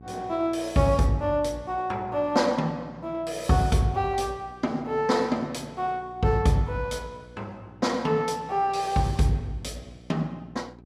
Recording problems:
electrical hum; 60 Hz, harmonics up to 840 Hz, SNR 23 dB

